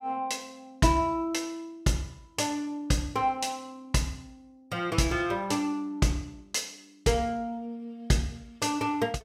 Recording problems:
none

